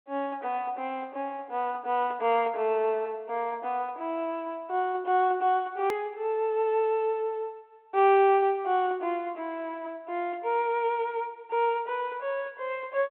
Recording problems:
phone line; 260 Hz to 3.3 kHz, G.726
hard cut with a click; at 6 s

